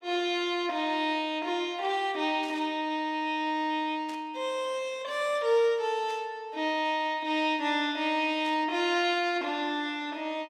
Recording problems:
static burst; 4 times, first at 2.5 s; peak -13 dB vs average level

